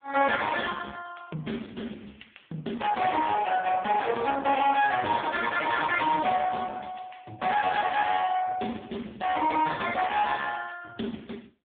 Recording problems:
telephone audio; 190 Hz to 2.9 kHz, AMR-NB
distortion; hard clipping, signal-to-distortion ratio 8 dB

